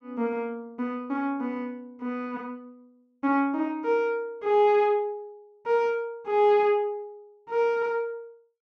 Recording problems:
none

